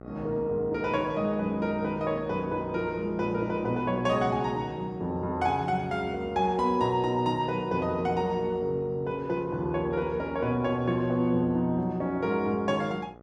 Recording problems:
hum; 60 Hz, harmonics up to 1.5 kHz, SNR 18 dB

